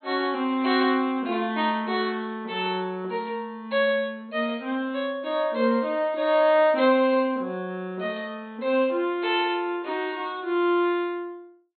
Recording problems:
low-pass filter; nothing above 4.2 kHz

